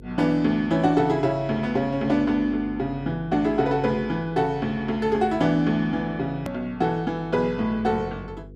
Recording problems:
hum; 50 Hz, harmonics up to 500 Hz, SNR 20 dB
hard cut with a click; at 6.5 s

